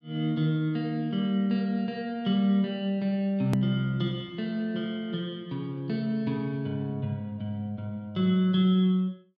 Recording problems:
edit click; at 3.5 s

